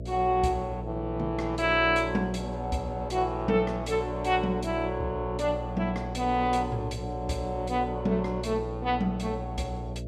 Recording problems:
hum; 60 Hz, harmonics up to 660 Hz, SNR 8 dB

